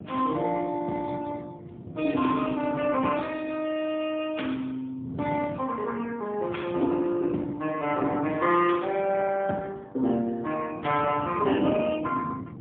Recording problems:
phone line; 150 Hz to 3.4 kHz, AMR-NB, then MP3
wind noise; below 290 Hz, SNR 15 dB

